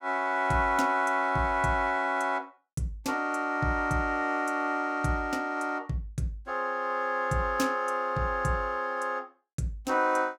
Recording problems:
none

